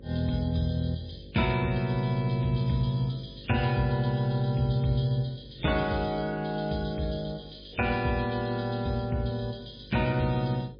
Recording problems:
lossy codec; MP3, log-spectral distance 5 dB
hum; 50 Hz, harmonics up to 550 Hz, SNR 21 dB

